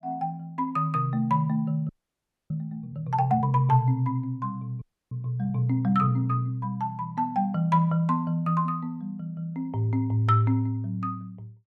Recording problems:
frozen audio; at 2 s for 0.5 s and at 5 s

